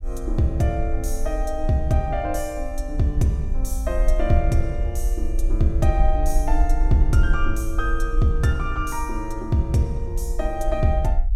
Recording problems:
rumble; below 48 Hz, SNR 3 dB

